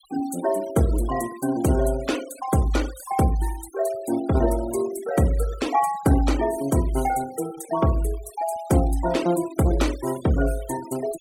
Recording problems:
noise reduction artefacts; signal-to-artefact ratio 17 dB

